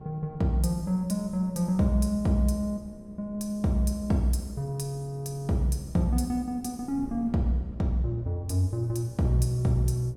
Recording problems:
electrical hum; 60 Hz, harmonics up to 1.1 kHz, SNR 24 dB
wind noise; below 180 Hz, SNR 22 dB

